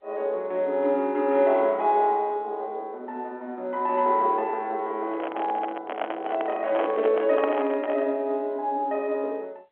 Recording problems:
phone line; 260 Hz to 3.4 kHz, G.711
handling noise; from 5 to 8 s; peak 0 dB vs average level

